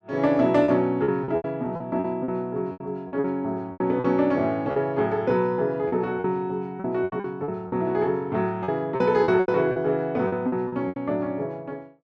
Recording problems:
lost packets; 12% of the sound replaced, filled with repeated pitch periods

